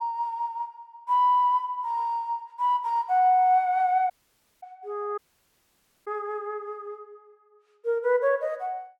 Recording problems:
audio cutting out; at 4 s for 0.5 s and at 5 s for 1 s

